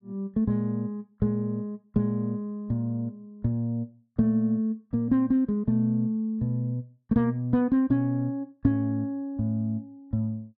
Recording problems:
none

